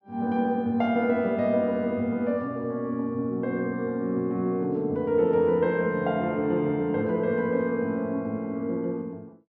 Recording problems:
none

